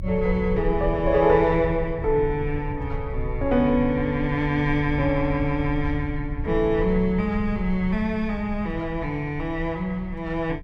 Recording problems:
rumble; below 88 Hz, SNR 10 dB

